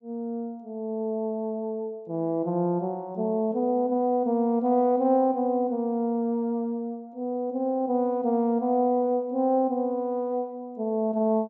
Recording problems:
treble missing; nothing above 8 kHz

